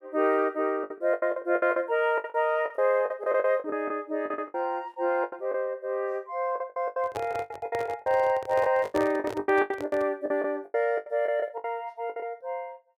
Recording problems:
lost packets; 17% of the sound replaced, filled with the last packet
handling noise; from 7 to 10 s; peak 0 dB vs average level

